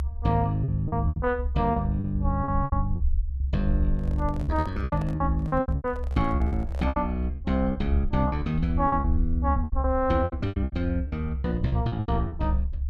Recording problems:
rumble; below 70 Hz, strongest tone 68 Hz, SNR 3 dB
packet loss; 16% of the sound replaced, filled with repeated pitch periods
handling noise; from 4 to 7 s; peak -10 dB vs average level

